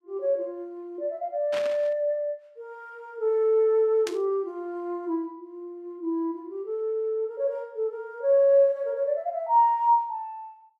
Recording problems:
static burst; at 1.5 s and at 4 s; peak -5 dB vs average level

